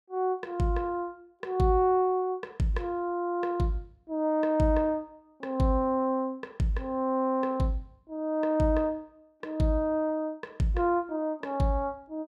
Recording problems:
none

